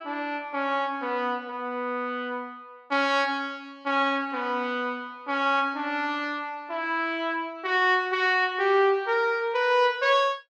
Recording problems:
none

